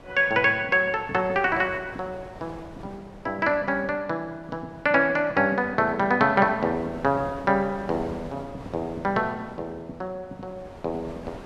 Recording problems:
wind noise; below 800 Hz, SNR 19 dB

